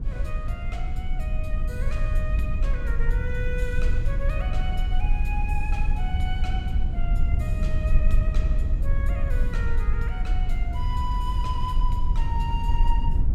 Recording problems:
rumble; below 62 Hz, strongest tone 20 Hz, SNR -9 dB

